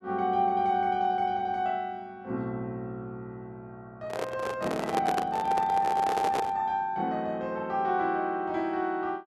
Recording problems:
handling noise; from 4 to 6.5 s; peak +2 dB vs average level

